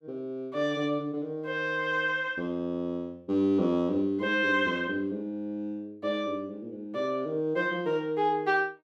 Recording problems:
none

